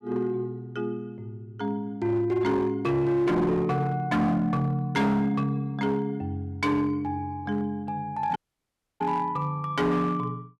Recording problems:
distorted audio; hard clipping, signal-to-distortion ratio 11 dB
dropout; at 8.5 s for 0.5 s

